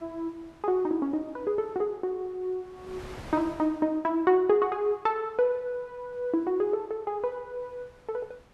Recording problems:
wind noise; below 1.4 kHz, SNR 23 dB

